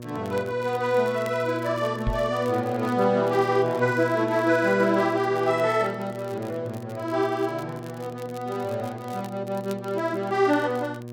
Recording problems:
hum; 60 Hz, harmonics up to 1.1 kHz, SNR 12 dB
crackle; vinyl, SNR 25 dB
microphone thump; at 2 s; peak 0 dB vs average level

